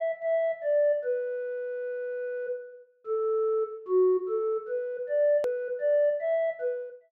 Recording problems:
edit click; at 5.5 s

